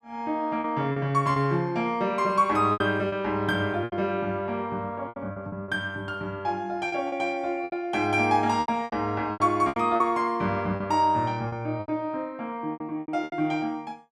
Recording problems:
lost packets; 10% of the sound replaced, filled with repeated pitch periods

